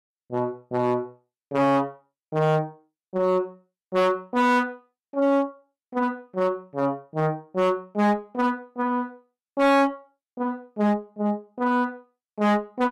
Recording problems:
distortion; hard clipping, uneven, signal-to-distortion ratio 10 dB

